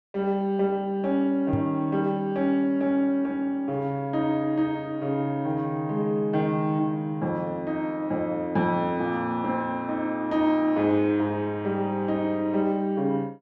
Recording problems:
microphone bump; at 1.5 s; peak +1 dB vs average level

